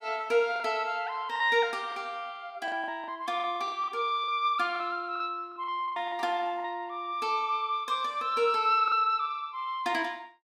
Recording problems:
packet loss; 8% of the sound replaced, filled with the last packet

